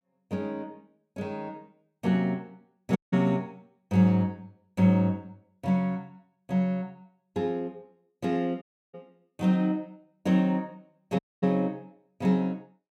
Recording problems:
dropout; at 3 s, at 8.5 s and at 11 s

